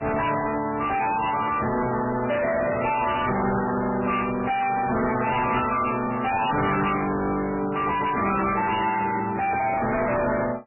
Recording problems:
lossy codec; AAC, then MP3, log-spectral distance 6 dB, nothing above 2.5 kHz
distorted audio; hard clipping, signal-to-distortion ratio 5 dB

